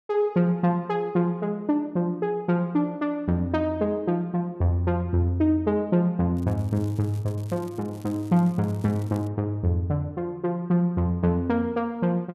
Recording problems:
crackle; from 6.5 to 9.5 s; loose cable, SNR 27 dB

